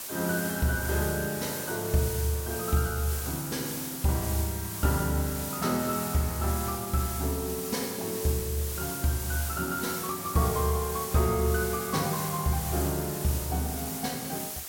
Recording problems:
hiss; slope -1 dB per octave, SNR 5 dB

